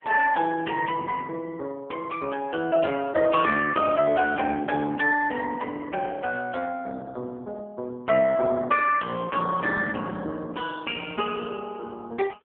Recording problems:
phone line; 220 Hz to 3.1 kHz, AMR-NB

